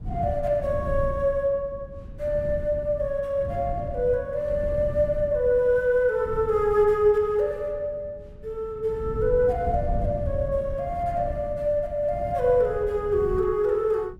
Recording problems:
wind noise; below 130 Hz, SNR 11 dB

